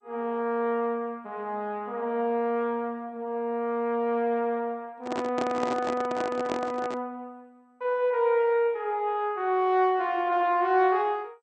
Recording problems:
lossy compression; MP2, log-spectral distance 2 dB
handling noise; from 5 to 7 s; peak -1 dB vs average level

